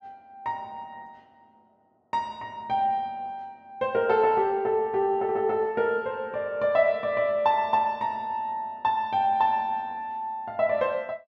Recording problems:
none

